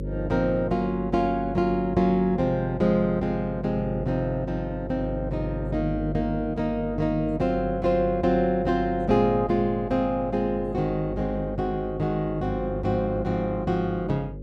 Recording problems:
hum; 50 Hz, harmonics up to 550 Hz, SNR 10 dB

